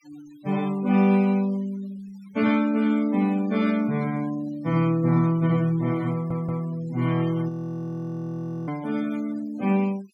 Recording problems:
noise reduction artefacts; signal-to-artefact ratio 22 dB
stutter; at 6 s
audio freezing; at 7.5 s for 1 s

